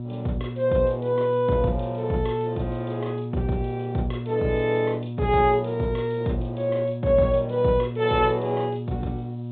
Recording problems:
low-pass filter; nothing above 4 kHz
electrical hum; 60 Hz, harmonics up to 720 Hz, SNR 8 dB
background hiss; SNR 42 dB

